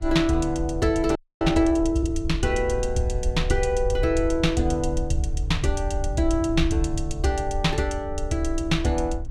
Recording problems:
wind noise; below 70 Hz, SNR 6 dB
frozen audio; at 1 s

